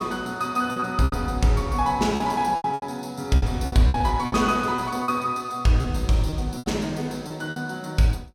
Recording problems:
lost packets; 11% of the sound replaced, filled with repeated pitch periods

